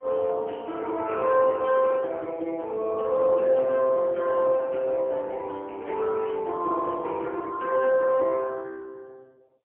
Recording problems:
telephone audio; 240 Hz to 3.1 kHz, AMR-NB, then MP3

